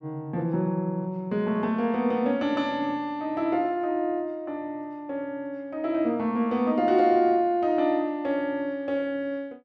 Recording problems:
none

